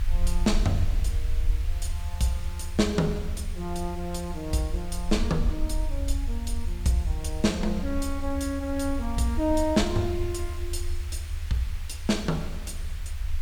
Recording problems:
background hiss; SNR 18 dB
low-frequency rumble; below 70 Hz, strongest tone 22 Hz, SNR 4 dB

